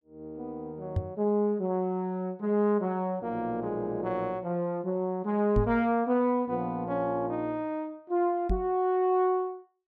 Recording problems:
knock on the microphone; at 1 s, at 5.5 s and at 8.5 s; peak +4 dB vs average level

